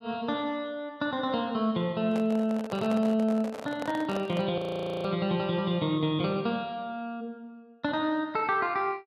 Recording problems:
handling noise; from 2 to 4.5 s; peak -3 dB vs average level
audio freezing; at 4.5 s

